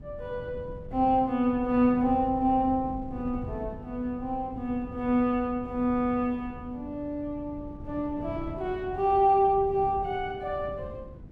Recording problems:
wind noise; below 200 Hz, SNR 15 dB

